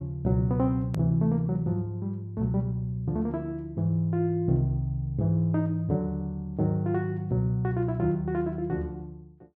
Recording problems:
edit click; at 1 s

